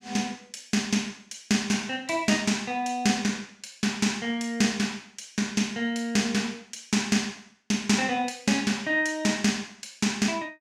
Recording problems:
none

